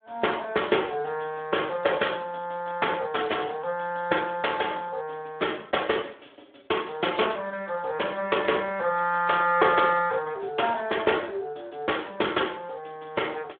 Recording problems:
telephone audio; 280 Hz to 3.5 kHz, Speex

